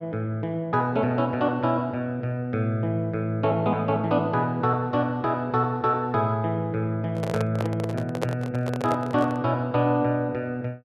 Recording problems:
microphone handling noise; from 7 to 9.5 s; peak +2 dB vs average level

